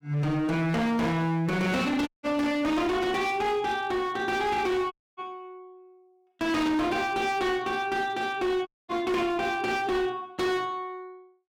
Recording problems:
distortion; hard clipping, signal-to-distortion ratio 7 dB
audio cutting out; at 2 s, at 5 s and at 8.5 s

